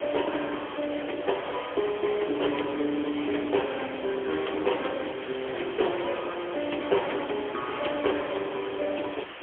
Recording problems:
phone line; 260 Hz to 3.3 kHz, AMR-NB, then MP3
background hiss; SNR 11 dB

